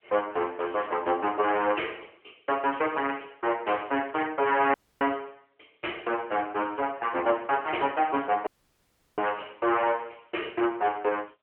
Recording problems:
phone line; 300 Hz to 3.1 kHz, AMR-NB
audio cutting out; at 4.5 s and at 8.5 s for 0.5 s

